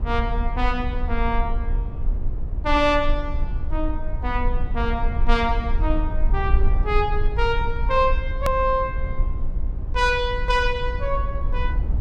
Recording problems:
electrical hum; 60 Hz, harmonics up to 1.2 kHz, SNR 21 dB
low-frequency rumble; below 54 Hz, strongest tone 20 Hz, SNR 2 dB
hard cut with a click; at 8.5 s

